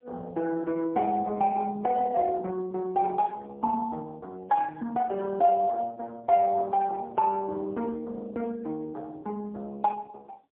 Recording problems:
phone line; 260 Hz to 2.3 kHz, AMR-NB

